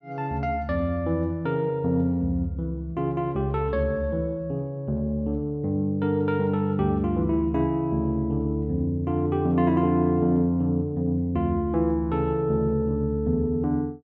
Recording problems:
none

